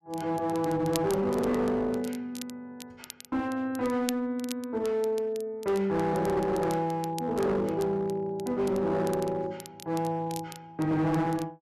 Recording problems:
distorted audio; hard clipping, uneven, signal-to-distortion ratio 10 dB
crackling; vinyl, SNR 17 dB

